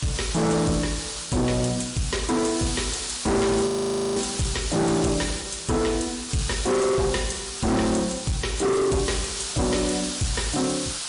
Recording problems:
lossy compression; MP3, log-spectral distance 15 dB, nothing above 10.4 kHz
distorted audio; hard clipping, uneven, signal-to-distortion ratio 7 dB
background hiss; SNR 6 dB
frozen audio; at 3.5 s

